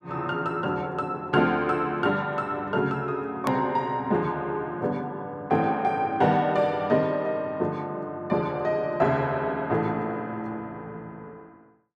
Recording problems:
edit click; at 3.5 s

